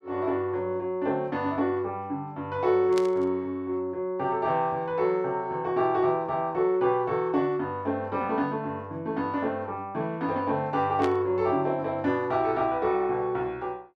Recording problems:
static burst; at 3 s and at 11 s; peak -5 dB vs average level

